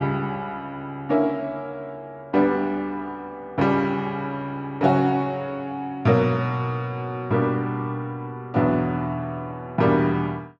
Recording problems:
none

